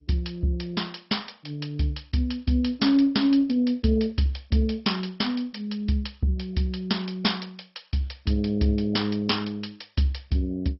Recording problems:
codec artefacts; MP2, log-spectral distance 5 dB, nothing above 5.5 kHz

